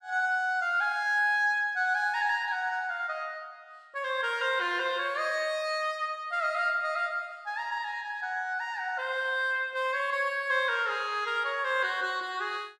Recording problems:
none

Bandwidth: 14 kHz